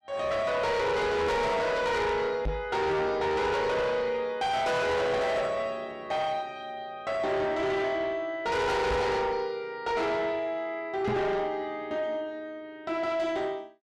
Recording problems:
distortion; soft clipping, signal-to-distortion ratio 7 dB
knock on the microphone; at 2.5 s, at 9 s and at 11 s; peak +2 dB vs average level

